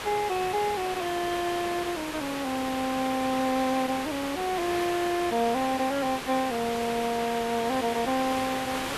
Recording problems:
background hiss; SNR 6 dB

